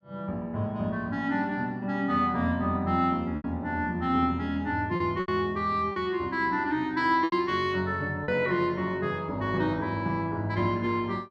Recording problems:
packet loss; 3% of the sound replaced, filled with repeated pitch periods

